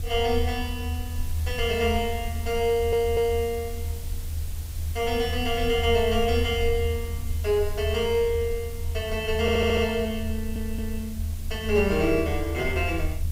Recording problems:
hiss; SNR 17 dB
rumble; below 82 Hz, SNR 6 dB
audio stuttering; at 2.5 s, at 9.5 s and at 10 s

